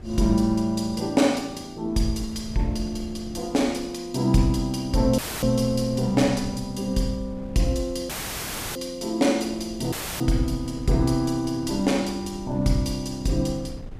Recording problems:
wind on the microphone; below 150 Hz, SNR 17 dB
audio cutting out; at 5 s, at 8 s for 0.5 s and at 10 s; filled with static

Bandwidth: 14.5 kHz